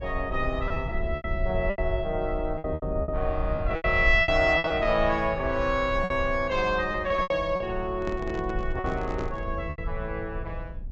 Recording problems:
low-pass filter; nothing above 8 kHz
low-frequency rumble; below 74 Hz, SNR 9 dB
lost packets; 9% of the sound replaced, filled with repeated pitch periods
handling noise; from 8 to 9.5 s; peak -5 dB vs average level

